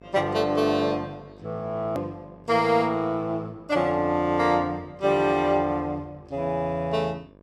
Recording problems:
hum; 50 Hz, harmonics up to 1.8 kHz, SNR 25 dB
click at an edit; at 2 s

